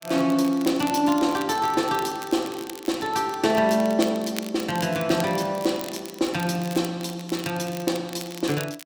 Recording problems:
crackle; vinyl, SNR 15 dB

